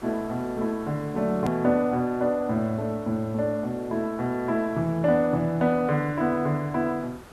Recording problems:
hiss; SNR 21 dB
click at an edit; at 1.5 s

